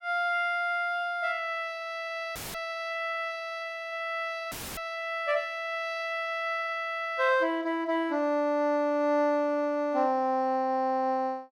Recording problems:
audio cutting out; at 2.5 s and at 4.5 s; filled with static

